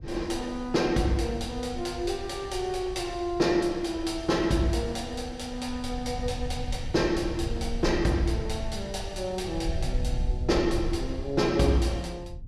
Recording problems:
rumble; below 84 Hz, SNR 9 dB

